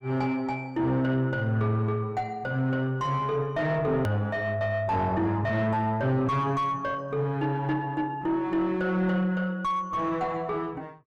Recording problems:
distortion; soft clipping, signal-to-distortion ratio 10 dB
click at an edit; at 4 s

